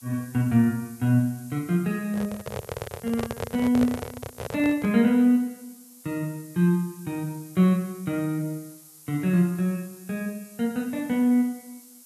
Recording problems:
background hiss; SNR 22 dB
handling noise; from 2 to 5 s; peak -1 dB vs average level

